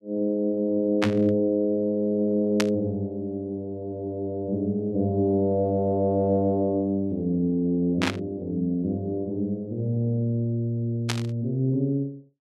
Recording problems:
static burst; 4 times, first at 1 s; peak +3 dB vs average level

